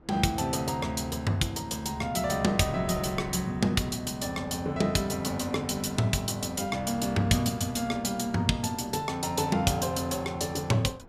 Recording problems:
wind on the microphone; below 470 Hz, SNR 21 dB

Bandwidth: 14.5 kHz